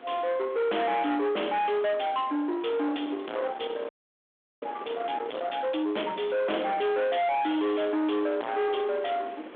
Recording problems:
phone line; 260 Hz to 3.1 kHz, G.726
distortion; soft clipping, signal-to-distortion ratio 5 dB
hiss; SNR 25 dB
wind noise; below 1.2 kHz, SNR 16 dB
audio freezing; at 4 s for 0.5 s

